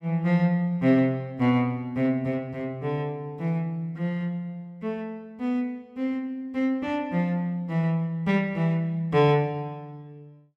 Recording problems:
none

